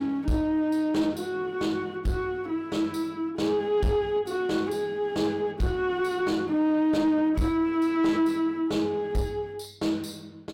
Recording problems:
distortion; soft clipping, signal-to-distortion ratio 11 dB

